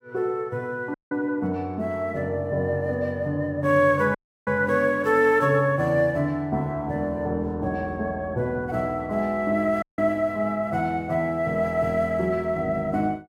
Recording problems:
dropout; at 1 s, at 4 s and at 10 s

